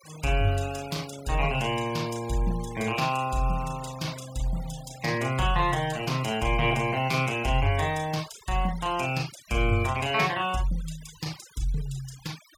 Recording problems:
denoising artefacts; signal-to-artefact ratio 17 dB

